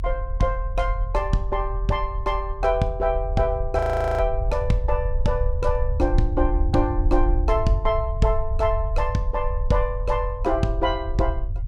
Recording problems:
low-frequency rumble; below 64 Hz, SNR 3 dB
frozen audio; at 4 s

